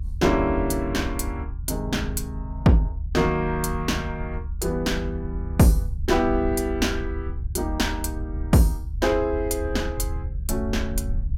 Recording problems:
rumble; below 74 Hz, SNR 7 dB

